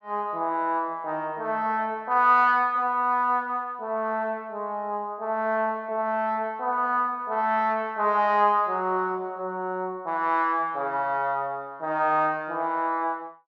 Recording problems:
none

